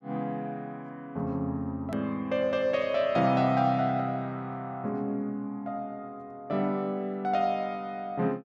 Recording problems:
click at an edit; at 2 s

